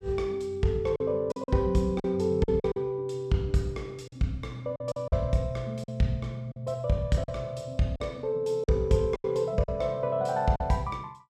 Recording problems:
lost packets; 7% of the sound replaced, filled with silence

